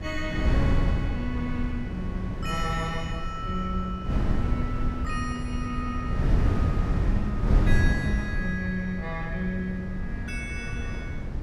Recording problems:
wind noise; below 140 Hz, SNR -4 dB

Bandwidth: 14 kHz